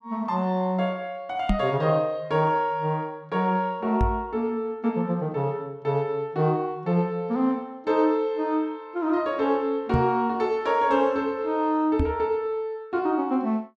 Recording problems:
microphone bump; 4 times, first at 1.5 s; peak +5 dB vs average level

